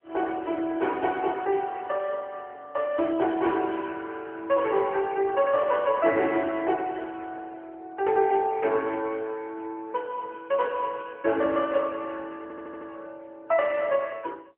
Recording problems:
phone line; 260 Hz to 3 kHz, AMR-NB
stutter; at 12 s

